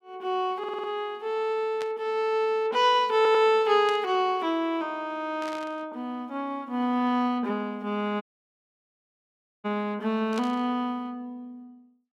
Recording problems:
stutter; at 0.5 s and at 3 s
burst of static; 4 times, first at 2 s; peak -9 dB vs average level
audio cutting out; at 8 s for 1.5 s

